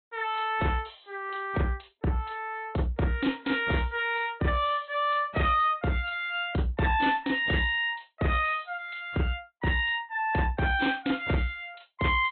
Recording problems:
treble cut off; nothing above 3.8 kHz
lossy compression; AAC, log-spectral distance 3 dB
distortion; soft clipping, signal-to-distortion ratio 11 dB

